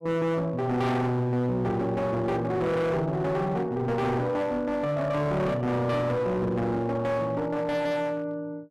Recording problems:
distortion; hard clipping, signal-to-distortion ratio 7 dB

